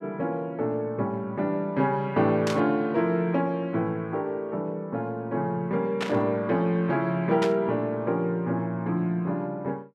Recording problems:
burst of static; at 2.5 s, at 6 s and at 7.5 s; peak 0 dB vs average level

